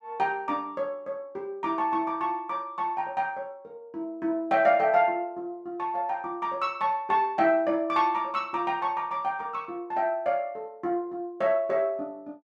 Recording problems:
none

